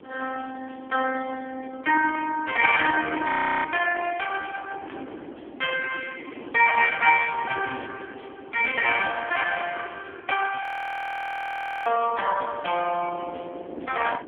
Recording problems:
telephone audio; 280 Hz to 3.1 kHz, AMR-NB
wind on the microphone; below 500 Hz, SNR 18 dB
frozen audio; at 3.5 s and at 11 s for 1 s

